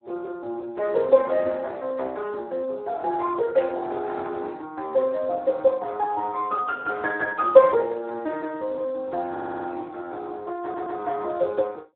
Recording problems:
phone line; 300 Hz to 3.3 kHz, Speex
burst of static; at 3.5 s; peak -12 dB vs average level
stutter; at 9.5 s and at 11 s

